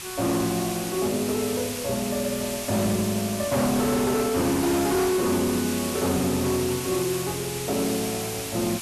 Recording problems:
distorted audio; hard clipping, uneven, signal-to-distortion ratio 11 dB
hiss; slope +1 dB per octave, SNR 6 dB

